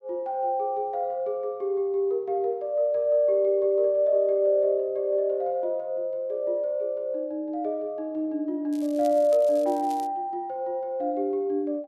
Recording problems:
crackle; from 8.5 to 10 s; loose cable, SNR 24 dB

